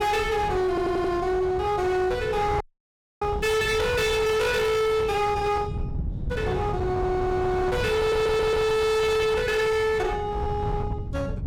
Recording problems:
distortion; hard clipping, uneven, signal-to-distortion ratio 7 dB
wind on the microphone; below 220 Hz, SNR 9 dB
audio stuttering; at 0.5 s and at 8 s
audio cutting out; at 2.5 s for 0.5 s

